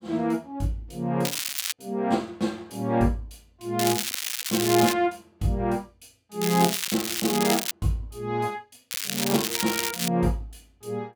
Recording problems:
crackling; 4 times, first at 1.5 s; loose cable, SNR 1 dB

